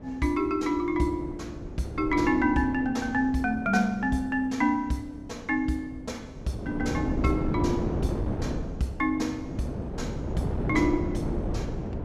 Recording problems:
wind on the microphone; below 350 Hz, SNR 5 dB

